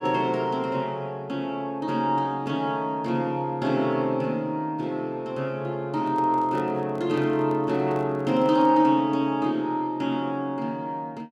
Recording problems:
microphone handling noise; from 6 to 9 s; peak -11 dB vs average level

